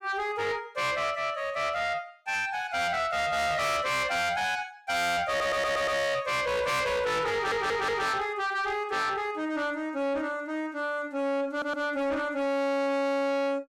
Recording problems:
distortion; soft clipping, signal-to-distortion ratio 6 dB
audio stuttering; at 5.5 s, at 7.5 s and at 12 s

